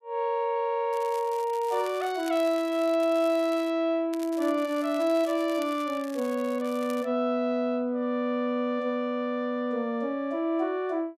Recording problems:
crackling; from 1 to 3.5 s and from 4 to 7 s; loose cable, SNR 20 dB

